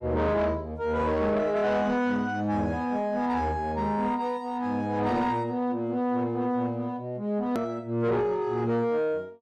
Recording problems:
distortion; soft clipping, signal-to-distortion ratio 11 dB
hard cut with a click; at 7.5 s

